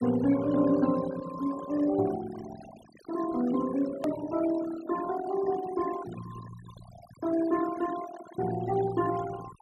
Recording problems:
denoising artefacts; signal-to-artefact ratio 14 dB
edit click; at 4 s

